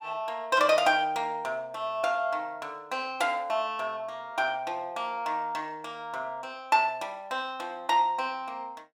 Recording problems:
none

